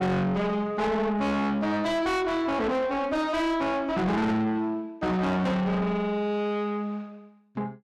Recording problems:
distorted audio; soft clipping, signal-to-distortion ratio 6 dB

